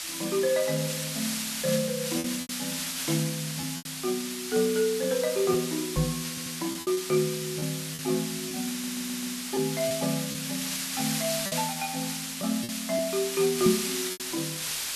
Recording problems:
background hiss; slope +3 dB per octave, SNR 2 dB
lost packets; 5% of the sound replaced, filled with repeated pitch periods
microphone bump; at 6 s and at 14 s; peak +8 dB vs average level
stutter; at 6.5 s and at 8.5 s

